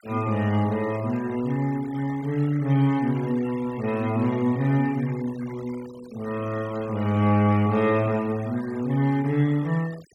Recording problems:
denoising artefacts; signal-to-artefact ratio 21 dB

